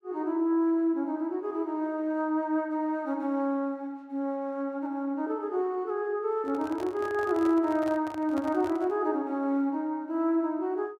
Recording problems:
microphone handling noise; from 6.5 to 9 s; peak -8 dB vs average level

